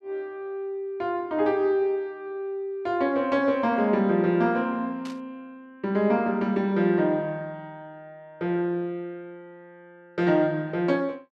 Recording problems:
burst of static; at 5 s; peak -13 dB vs average level

